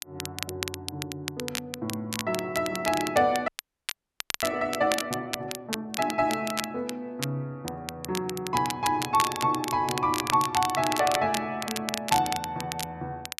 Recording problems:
crackle; vinyl, SNR 6 dB
audio freezing; at 3.5 s for 1 s

